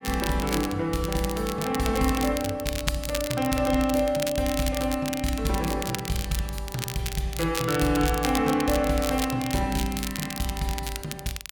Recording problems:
crackle; vinyl, SNR 8 dB

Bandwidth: 17.5 kHz